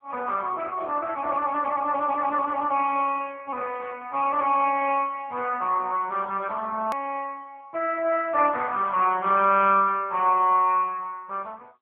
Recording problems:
telephone audio; 240 Hz to 3.3 kHz, AMR-NB
hard cut with a click; at 7 s

